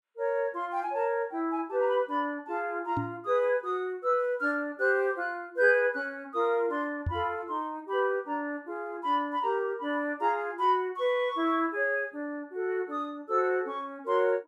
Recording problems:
knock on the microphone; at 3 s and at 7 s; peak +1 dB vs average level

